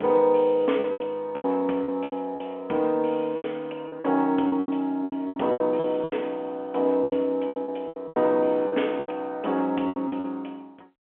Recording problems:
telephone audio; 240 Hz to 3.3 kHz, G.711
packet loss; 15% of the sound replaced, filled with repeated pitch periods

